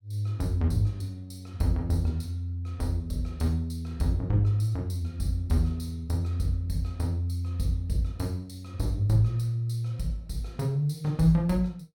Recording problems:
none

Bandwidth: 17 kHz